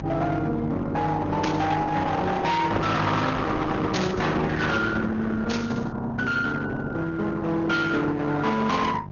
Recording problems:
low-pass filter; nothing above 6.7 kHz
lossy codec; Opus, log-spectral distance 3 dB
distortion; hard clipping, uneven, signal-to-distortion ratio 8 dB
electrical hum; 50 Hz, harmonics up to 600 Hz, SNR 13 dB
burst of static; at 1.5 s, at 4 s and at 5.5 s; peak -1 dB vs average level

